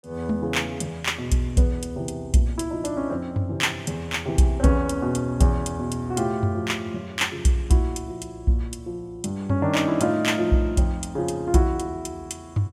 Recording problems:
none

